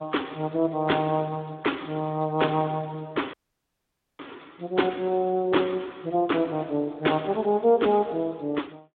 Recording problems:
phone line; 220 Hz to 3.6 kHz, Speex
audio cutting out; at 3.5 s for 1 s

